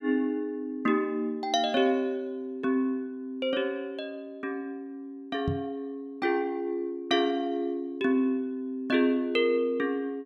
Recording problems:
microphone thump; at 5.5 s; peak +2 dB vs average level

